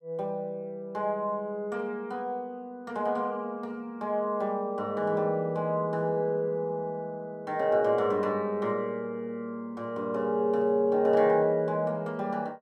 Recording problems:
none

